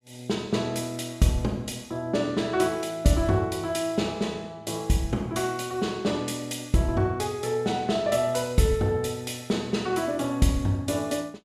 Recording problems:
none

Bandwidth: 14.5 kHz